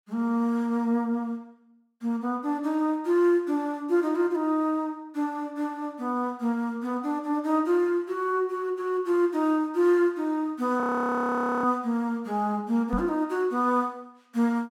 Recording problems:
audio freezing; at 11 s for 1 s
microphone thump; at 13 s; peak 0 dB vs average level

